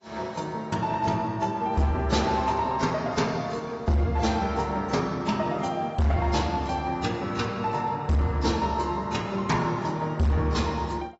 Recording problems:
lossy compression; AAC, log-spectral distance 3 dB, nothing above 7.6 kHz
distorted audio; hard clipping, signal-to-distortion ratio 10 dB

